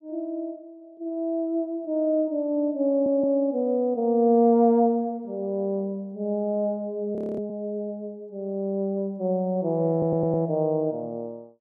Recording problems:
audio stuttering; at 3 s and at 10 s
audio freezing; at 7 s

